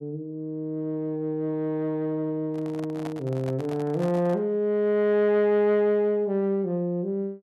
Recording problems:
handling noise; from 2.5 to 4.5 s; peak -8 dB vs average level

